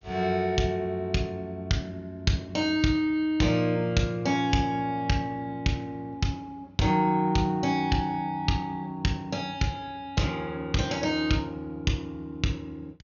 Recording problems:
treble missing; nothing above 6.7 kHz

